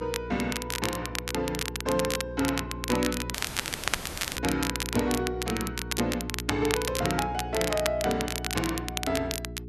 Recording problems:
hum; 60 Hz, harmonics up to 420 Hz, SNR 8 dB
crackle; vinyl, SNR 2 dB
audio cutting out; at 3.5 s for 1 s

